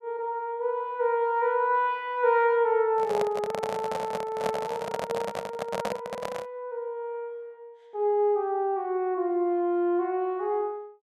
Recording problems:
microphone handling noise; from 3 to 6.5 s; peak +1 dB vs average level

